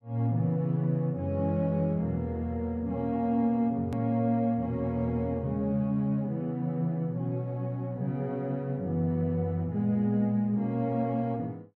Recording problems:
edit click; at 4 s

